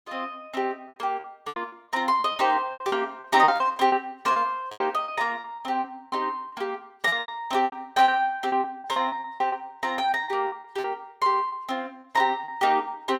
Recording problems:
lost packets; 14% of the sound replaced, filled with repeated pitch periods

